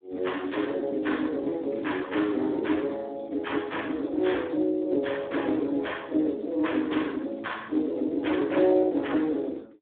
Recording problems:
phone line; 240 Hz to 3.6 kHz, Speex

